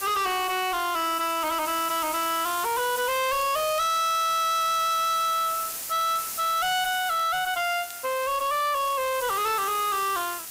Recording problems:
distortion; hard clipping, signal-to-distortion ratio 7 dB
background hiss; slope 0 dB per octave, SNR 9 dB
crackling; vinyl, SNR 27 dB

